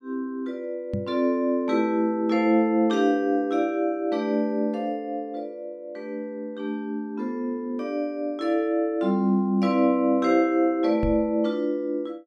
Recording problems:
microphone thump; at 1 s and at 11 s; peak -1 dB vs average level

